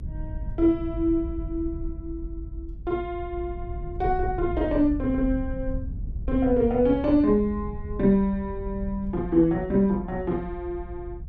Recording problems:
low-frequency rumble; below 82 Hz, SNR 10 dB

